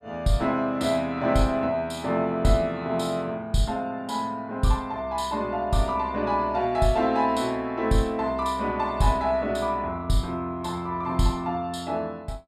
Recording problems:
none

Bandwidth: 14.5 kHz